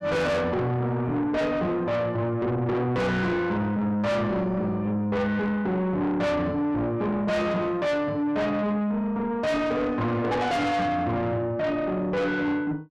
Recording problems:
distortion; soft clipping, signal-to-distortion ratio 7 dB

